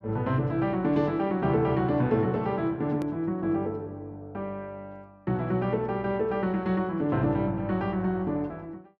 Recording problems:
hard cut with a click; at 3 s

